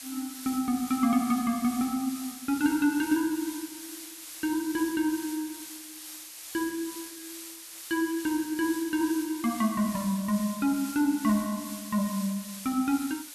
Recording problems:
background hiss; slope +3 dB per octave, SNR 11 dB

